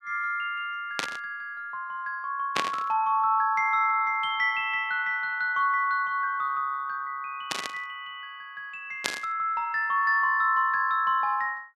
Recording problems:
static burst; 4 times, first at 1 s; peak +4 dB vs average level

